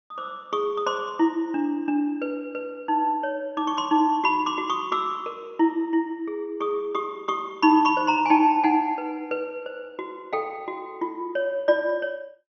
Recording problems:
low-pass filter; nothing above 6.2 kHz

